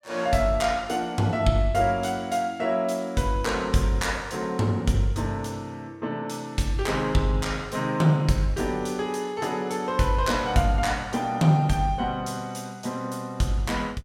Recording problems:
none

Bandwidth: 16 kHz